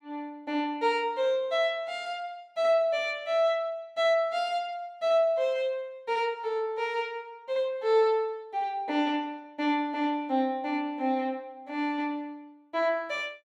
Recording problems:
none

